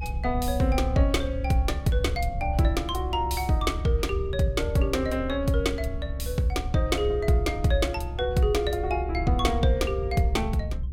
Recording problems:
rumble; below 78 Hz, strongest tone 66 Hz, SNR 6 dB

